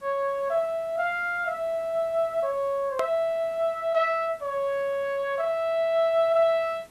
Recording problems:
hiss; slope -4 dB per octave, SNR 28 dB
click at an edit; at 3 s

